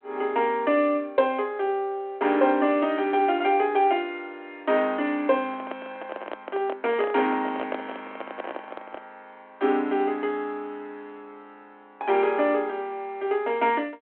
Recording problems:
phone line; 240 Hz to 3.3 kHz, G.726
handling noise; from 5.5 to 9 s; peak -4 dB vs average level

